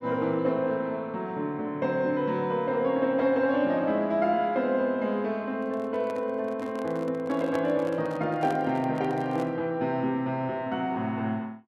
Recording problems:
microphone handling noise; from 5.5 to 9.5 s; peak -5 dB vs average level

